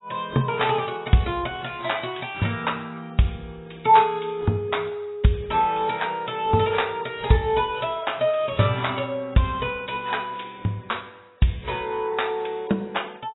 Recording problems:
lossy compression; AAC, log-spectral distance 5 dB, nothing above 3.8 kHz

